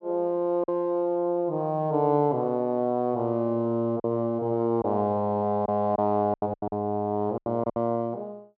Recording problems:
lost packets; 6% of the sound replaced, filled with silence

